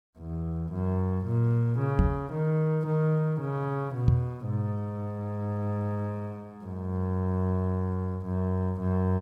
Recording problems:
microphone thump; at 2 s and at 4 s; peak +10 dB vs average level

